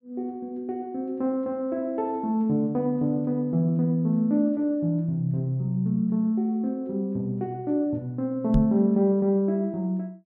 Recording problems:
microphone bump; at 8.5 s; peak +5 dB vs average level

